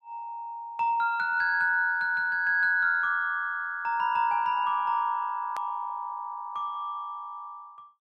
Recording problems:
click at an edit; at 5.5 s

